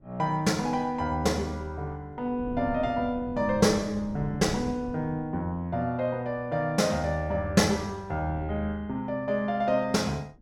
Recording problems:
wind noise; below 230 Hz, SNR 16 dB

